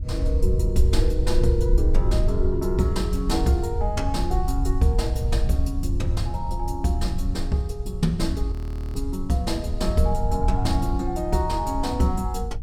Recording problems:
wind noise; below 70 Hz, SNR 1 dB
audio freezing; at 8.5 s

